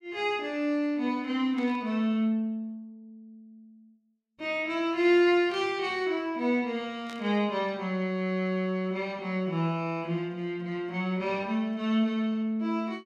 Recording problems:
burst of static; at 1.5 s, at 5.5 s and at 7 s; peak -13 dB vs average level

